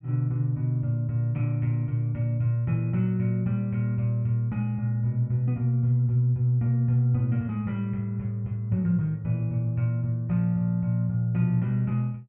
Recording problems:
none

